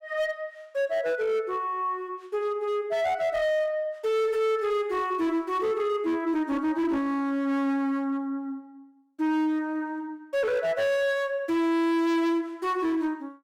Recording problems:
distorted audio; hard clipping, signal-to-distortion ratio 7 dB

